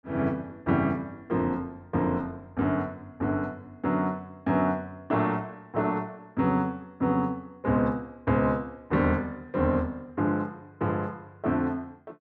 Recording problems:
none

